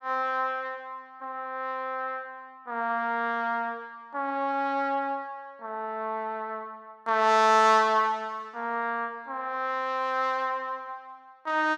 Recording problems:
none

